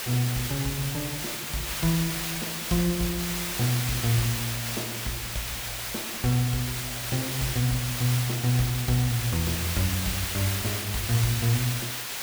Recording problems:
background hiss; slope +1 dB per octave, SNR 2 dB

